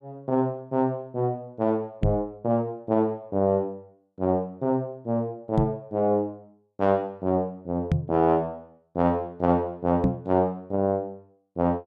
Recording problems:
microphone thump; 4 times, first at 2 s; peak +7 dB vs average level

